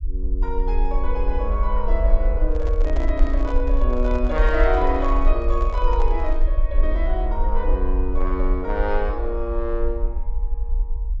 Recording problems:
treble missing; nothing above 8 kHz
rumble; below 48 Hz, SNR -2 dB
microphone handling noise; from 2.5 to 6.5 s; peak -5 dB vs average level

